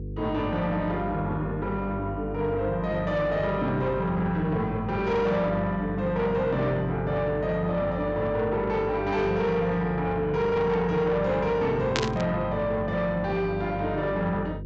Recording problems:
low-pass filter; nothing above 8 kHz
distortion; soft clipping, signal-to-distortion ratio 12 dB
hum; 50 Hz, harmonics up to 500 Hz, SNR 10 dB
burst of static; at 12 s; peak +3 dB vs average level

